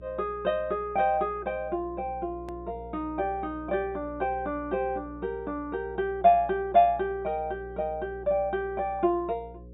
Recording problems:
treble missing; nothing above 4 kHz
hum; 60 Hz, harmonics up to 540 Hz, SNR 18 dB
click at an edit; at 2.5 s

